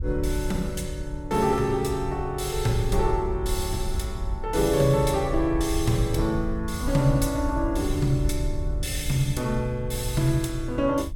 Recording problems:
wind noise; below 72 Hz, SNR 7 dB

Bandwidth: 17 kHz